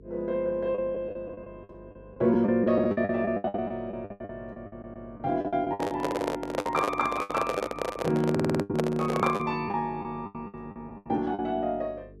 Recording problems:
electrical hum; 50 Hz, harmonics up to 500 Hz, SNR 23 dB
packet loss; 16% of the sound replaced, filled with the last packet
stutter; at 4.5 s and at 8.5 s
handling noise; from 5.5 to 9.5 s; peak +4 dB vs average level

